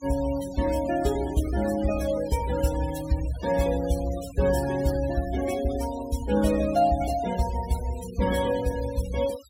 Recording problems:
noise reduction artefacts; signal-to-artefact ratio 14 dB

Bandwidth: 16 kHz